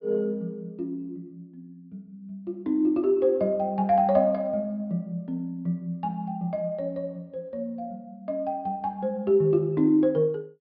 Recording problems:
treble cut off; nothing above 5.5 kHz

